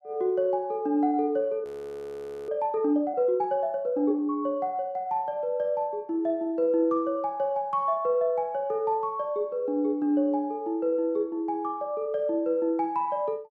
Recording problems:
frozen audio; at 1.5 s for 1 s

